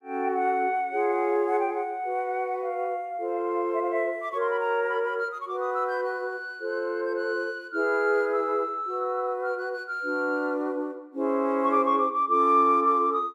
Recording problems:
none

